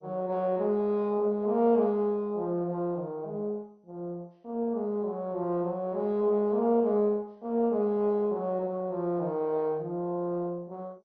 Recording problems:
lossy codec; MP2, log-spectral distance 2 dB

